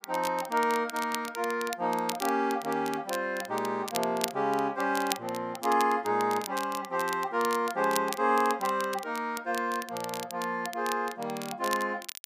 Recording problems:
crackling; vinyl, SNR 11 dB

